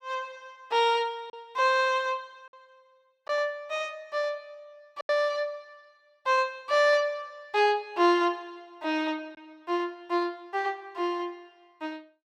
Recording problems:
lost packets; 1.5% of the sound replaced, filled with silence

